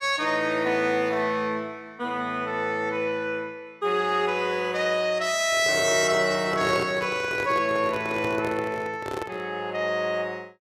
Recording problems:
handling noise; from 5.5 to 9.5 s; peak -2 dB vs average level

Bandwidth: 14.5 kHz